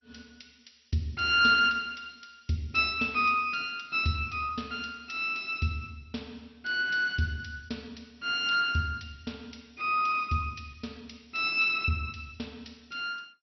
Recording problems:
codec artefacts; MP2, log-spectral distance 5 dB, nothing above 5.3 kHz

